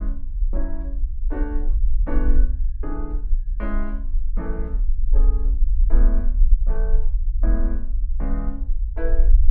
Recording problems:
rumble; below 42 Hz, strongest tone 20 Hz, SNR -10 dB

